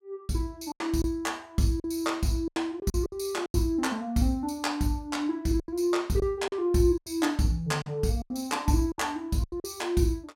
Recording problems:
packet loss; 9% of the sound replaced, filled with silence

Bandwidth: 16.5 kHz